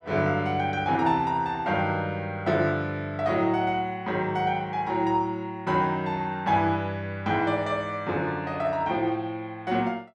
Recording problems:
none

